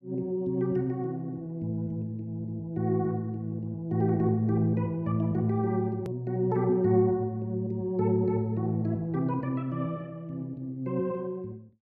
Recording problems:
click at an edit; at 6 s

